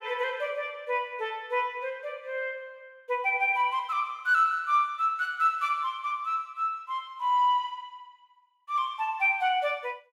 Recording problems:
none

